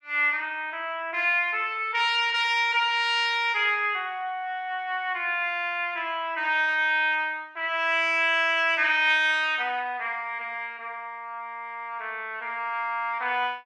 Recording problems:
none

